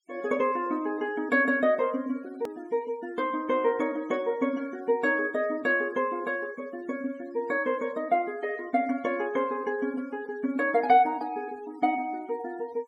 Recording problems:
noise reduction artefacts; signal-to-artefact ratio 26 dB
click at an edit; at 2.5 s

